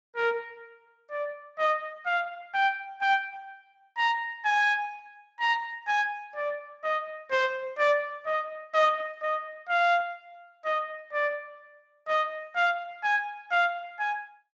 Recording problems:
lossy compression; Speex, log-spectral distance 3 dB

